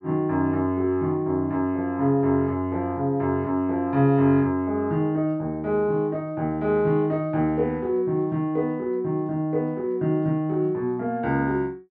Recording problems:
none

